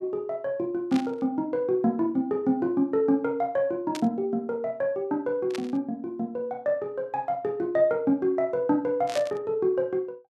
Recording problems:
static burst; 4 times, first at 1 s; peak -4 dB vs average level

